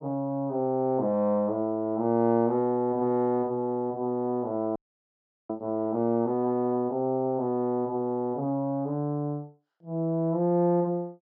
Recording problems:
audio freezing; at 5 s for 0.5 s

